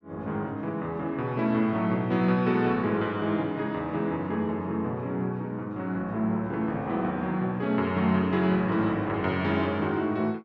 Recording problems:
none

